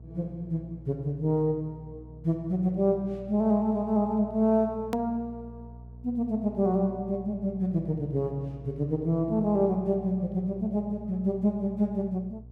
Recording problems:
hum; 60 Hz, harmonics up to 480 Hz, SNR 18 dB
click at an edit; at 5 s

